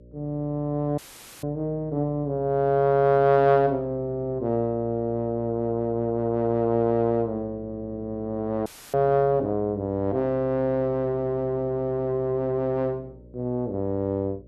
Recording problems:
hum; 60 Hz, harmonics up to 600 Hz, SNR 22 dB
audio cutting out; at 1 s and at 8.5 s; filled with static

